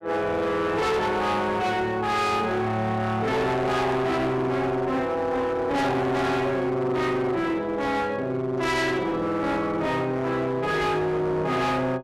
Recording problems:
distorted audio; hard clipping, uneven, signal-to-distortion ratio 7 dB

